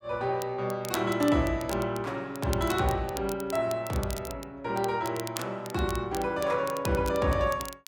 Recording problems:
crackling; vinyl, SNR 14 dB

